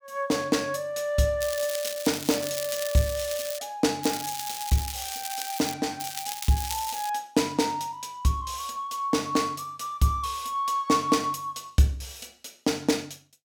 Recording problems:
crackle; from 1.5 to 3.5 s, from 4 to 5.5 s and from 6 to 7 s; loose cable, SNR 7 dB

